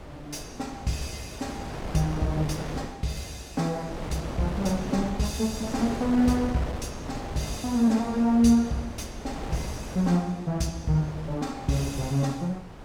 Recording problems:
wind noise; below 710 Hz, SNR 10 dB

